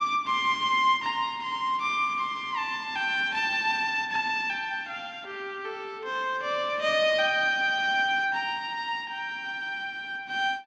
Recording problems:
none

